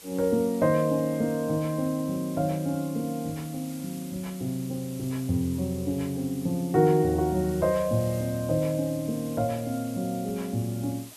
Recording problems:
background hiss; slope 0 dB per octave, SNR 17 dB

